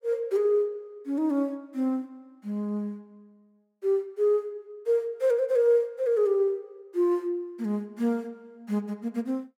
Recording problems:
none

